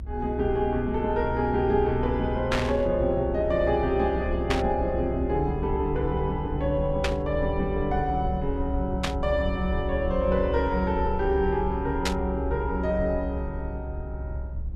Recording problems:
rumble; below 68 Hz, strongest tone 64 Hz, SNR 7 dB
static burst; 5 times, first at 2.5 s; peak +3 dB vs average level

